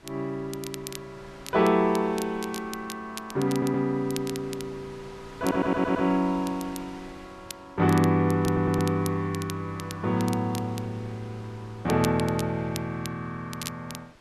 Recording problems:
wind noise; below 2.5 kHz, SNR 22 dB
crackling; vinyl, SNR 15 dB
stutter; at 3.5 s, at 5.5 s and at 8.5 s

